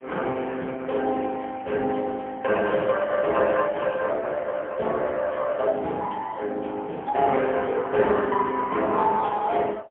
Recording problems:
phone line; 300 Hz to 3.3 kHz, AMR-NB, then MP3

